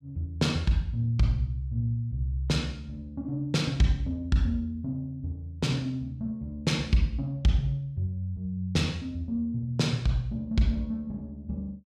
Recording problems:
none

